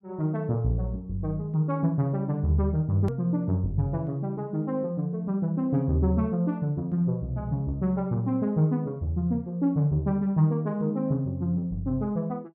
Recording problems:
hard cut with a click; at 3 s

